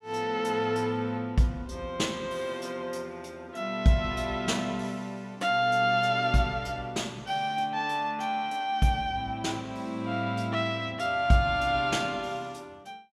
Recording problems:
none

